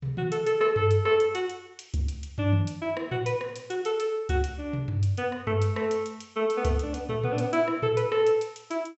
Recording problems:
treble cut off; nothing above 7.8 kHz

